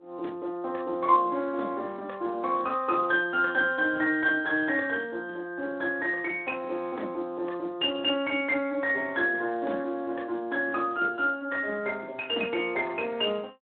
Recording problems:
telephone audio; 240 Hz to 3.8 kHz, Speex

